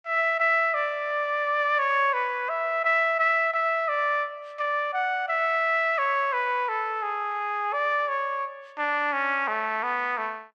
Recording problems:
none

